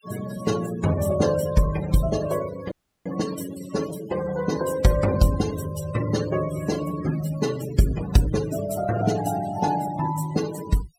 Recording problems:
noise reduction artefacts; signal-to-artefact ratio 12 dB
audio cutting out; at 2.5 s

